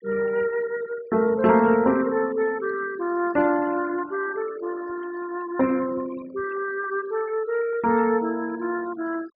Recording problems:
treble cut off; nothing above 5.5 kHz
noise reduction artefacts; signal-to-artefact ratio 19 dB

